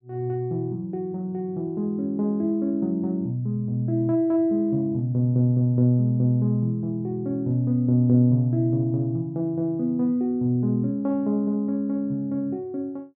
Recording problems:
none

